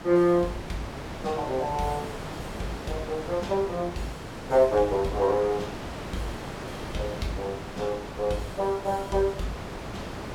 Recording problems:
wind noise; below 1.3 kHz, SNR 9 dB

